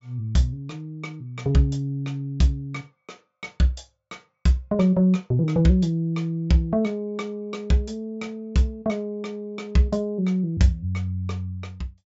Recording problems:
treble missing; nothing above 8 kHz

